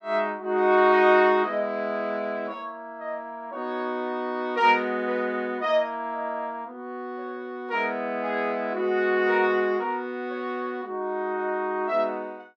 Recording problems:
none

